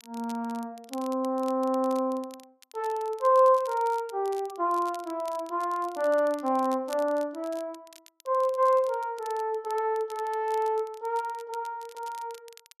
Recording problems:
crackling; vinyl, SNR 23 dB

